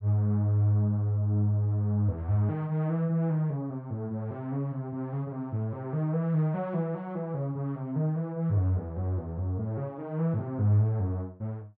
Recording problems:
none

